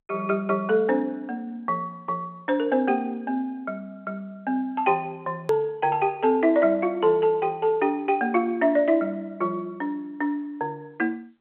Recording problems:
telephone audio; 240 Hz to 3.4 kHz, G.711
click at an edit; at 5.5 s

